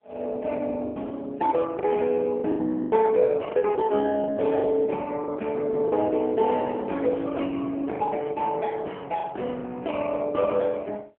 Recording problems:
telephone audio; 220 Hz to 3.3 kHz, AMR-NB
packet loss; 6% of the sound replaced, filled with the last packet

